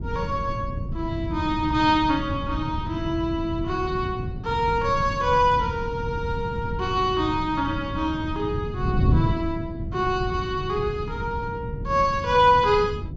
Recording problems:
treble cut off; nothing above 7.9 kHz
wind noise; below 160 Hz, SNR 6 dB

